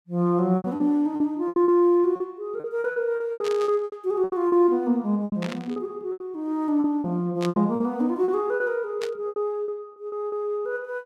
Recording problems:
lost packets; 14% of the sound replaced, filled with repeated pitch periods
burst of static; 4 times, first at 3.5 s; peak -6 dB vs average level

